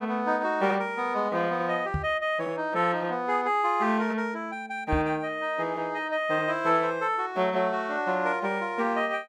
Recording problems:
microphone bump; at 2 s and at 5 s; peak +1 dB vs average level

